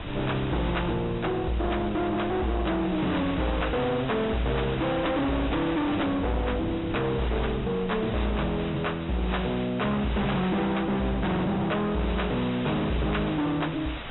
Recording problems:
treble cut off; nothing above 3.9 kHz
distorted audio; hard clipping, uneven, signal-to-distortion ratio 6 dB
hiss; SNR 11 dB
wind on the microphone; below 400 Hz, SNR 13 dB

